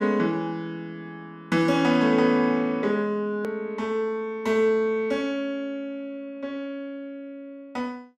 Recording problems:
click at an edit; at 3.5 s

